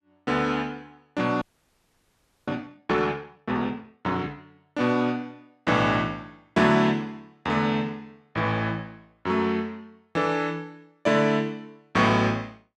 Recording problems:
audio freezing; at 1.5 s for 1 s

